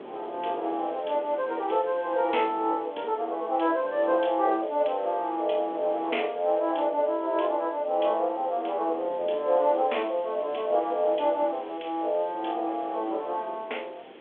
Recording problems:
telephone audio; 340 Hz to 3.7 kHz, G.726
background hiss; SNR 28 dB
wind on the microphone; below 650 Hz, SNR 20 dB

